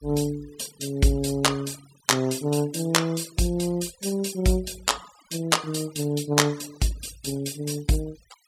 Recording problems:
noise reduction artefacts; signal-to-artefact ratio 20 dB

